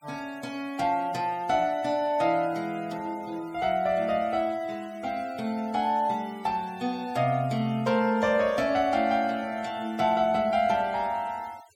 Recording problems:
noise reduction artefacts; signal-to-artefact ratio 24 dB

